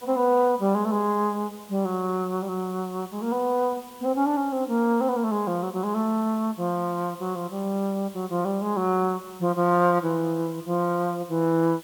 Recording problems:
hiss; slope -1 dB per octave, SNR 22 dB

